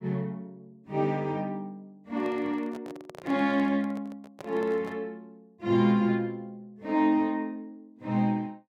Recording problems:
microphone handling noise; from 2 to 5 s; peak -10 dB vs average level

